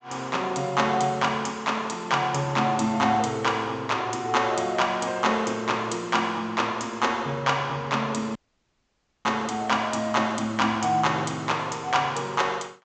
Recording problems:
treble missing; nothing above 8 kHz
dropout; at 8.5 s for 1 s

